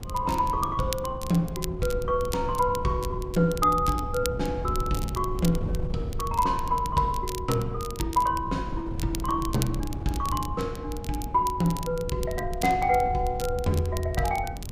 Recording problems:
wind on the microphone; below 120 Hz, SNR 8 dB
crackle; vinyl, SNR 14 dB

